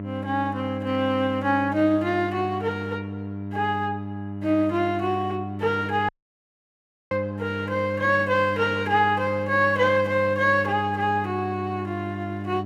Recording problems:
hum; 50 Hz, harmonics up to 1 kHz, SNR 9 dB
audio cutting out; at 6 s for 1 s

